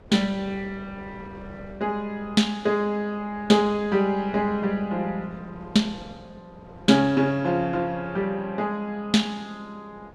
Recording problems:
wind on the microphone; below 550 Hz, SNR 22 dB

